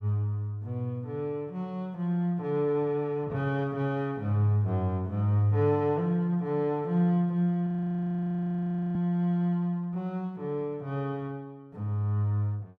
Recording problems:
audio freezing; at 7.5 s for 1.5 s

